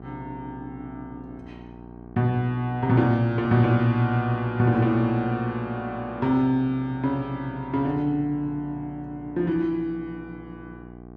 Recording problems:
hum; 60 Hz, harmonics up to 1.2 kHz, SNR 18 dB

